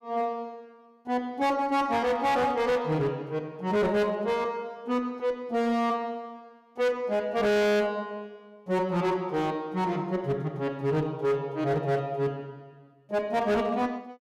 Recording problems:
distorted audio; hard clipping, signal-to-distortion ratio 7 dB

